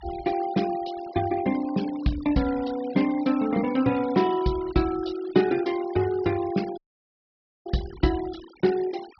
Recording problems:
treble missing; nothing above 5.5 kHz
noise reduction artefacts; signal-to-artefact ratio 18 dB
audio cutting out; at 7 s for 1 s

